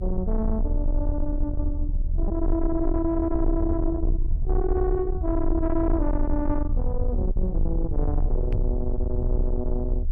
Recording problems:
distorted audio; soft clipping, signal-to-distortion ratio 11 dB
low-frequency rumble; below 68 Hz, strongest tone 30 Hz, SNR 0 dB
packet loss; 0.6% of the sound replaced, filled with repeated pitch periods
microphone thump; at 8.5 s; peak +6 dB vs average level

